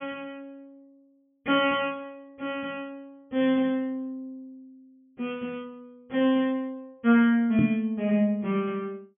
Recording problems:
low-pass filter; nothing above 3.5 kHz
microphone thump; at 7.5 s; peak +4 dB vs average level

